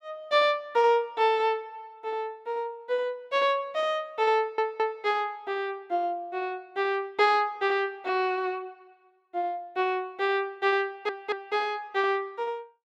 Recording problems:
stutter; at 4.5 s and at 11 s

